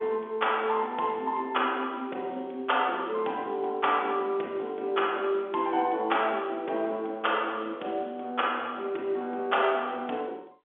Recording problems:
phone line; 280 Hz to 3.6 kHz, G.711

